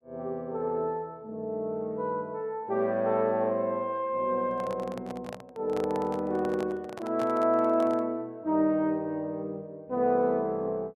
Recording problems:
handling noise; from 4.5 to 8 s; peak -6 dB vs average level

